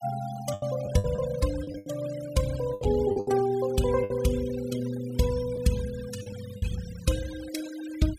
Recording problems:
noise reduction artefacts; signal-to-artefact ratio 14 dB
lost packets; 8% of the sound replaced, filled with the last packet

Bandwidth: 15.5 kHz